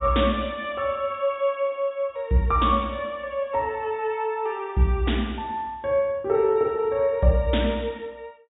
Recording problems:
low-pass filter; nothing above 4 kHz

